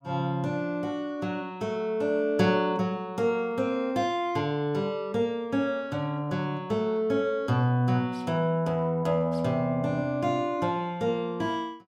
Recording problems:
none

